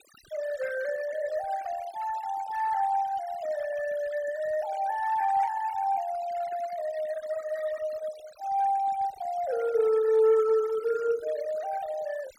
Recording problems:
denoising artefacts; signal-to-artefact ratio 17 dB

